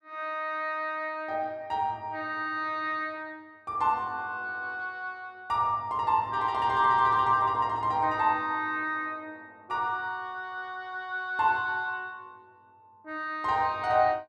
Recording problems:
none

